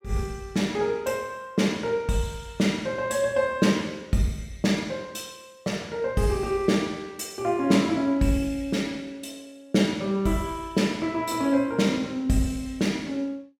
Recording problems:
none

